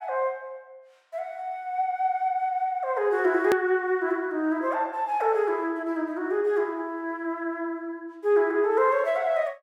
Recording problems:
click at an edit; at 3.5 s

